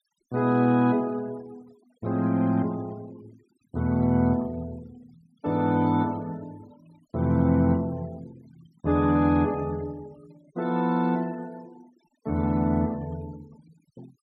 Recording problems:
denoising artefacts; signal-to-artefact ratio 26 dB

